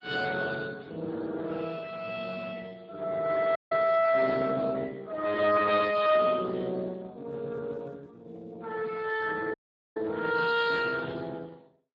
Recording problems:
lossy codec; MP3, then Speex, log-spectral distance 4 dB
audio cutting out; at 3.5 s and at 9.5 s

